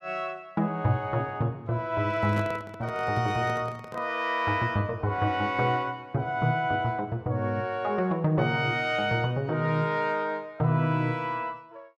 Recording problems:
microphone handling noise; from 2 to 4 s; peak -6 dB vs average level

